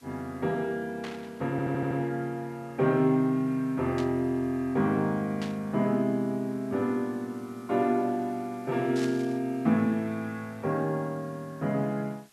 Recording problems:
background hiss; SNR 29 dB
burst of static; 4 times, first at 1 s; peak -7 dB vs average level
audio stuttering; at 1.5 s

